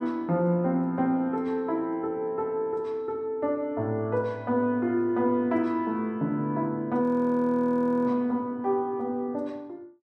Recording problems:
audio freezing; at 7 s for 1 s

